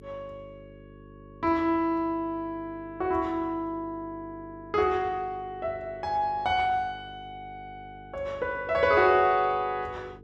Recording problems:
electrical hum; 50 Hz, harmonics up to 450 Hz, SNR 22 dB

